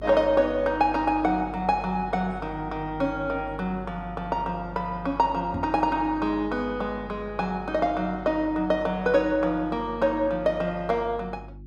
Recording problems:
mains hum; 50 Hz, harmonics up to 350 Hz, SNR 17 dB
knock on the microphone; at 5.5 s; peak -2 dB vs average level

